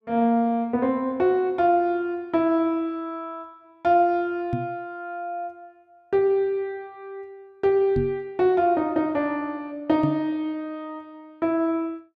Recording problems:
microphone thump; at 4.5 s, at 8 s and at 10 s; peak +2 dB vs average level

